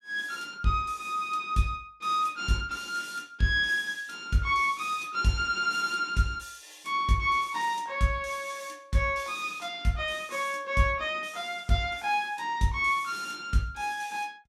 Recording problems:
none

